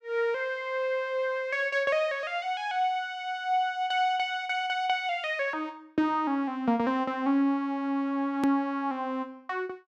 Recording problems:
edit click; at 8.5 s

